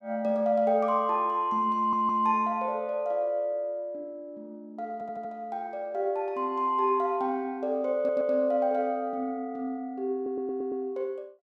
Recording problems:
audio stuttering; 4 times, first at 2 s

